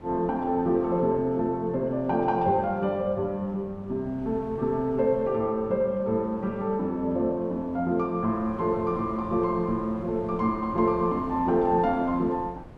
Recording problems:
wind noise; below 430 Hz, SNR 19 dB

